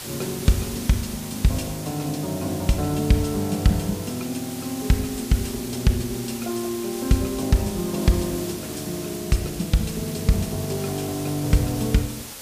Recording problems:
hiss; slope -1 dB per octave, SNR 10 dB

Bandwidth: 15 kHz